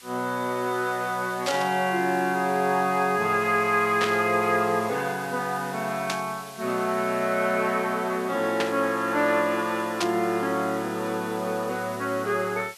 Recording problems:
hiss; slope +3 dB per octave, SNR 18 dB
burst of static; 5 times, first at 1.5 s; peak +1 dB vs average level

